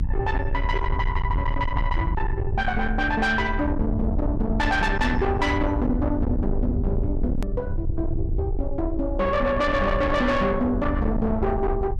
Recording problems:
distorted audio; soft clipping, signal-to-distortion ratio 8 dB
rumble; below 110 Hz, SNR 3 dB
hard cut with a click; at 7.5 s

